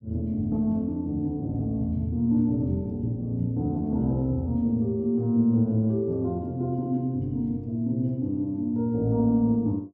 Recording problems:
none

